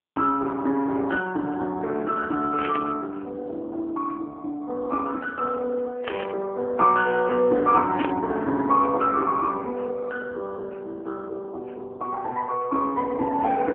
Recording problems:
telephone audio; 240 Hz to 2.6 kHz, AMR-NB
burst of static; at 2.5 s, at 6 s and at 8 s; peak -1 dB vs average level

